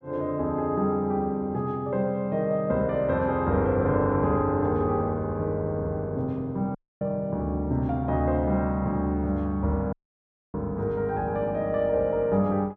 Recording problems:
audio cutting out; at 7 s and at 10 s for 0.5 s

